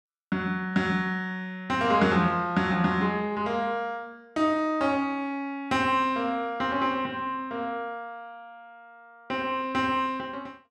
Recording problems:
none

